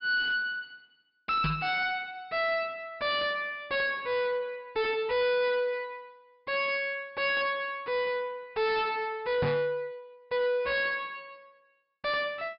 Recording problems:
low-pass filter; nothing above 5.5 kHz
distorted audio; soft clipping, signal-to-distortion ratio 5 dB
microphone thump; at 1.5 s and at 9.5 s; peak +6 dB vs average level

